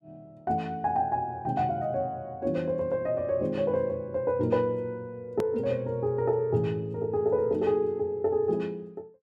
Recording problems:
hard cut with a click; at 5.5 s

